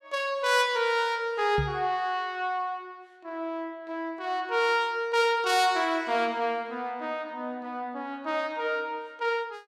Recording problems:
microphone bump; at 1.5 s; peak +1 dB vs average level

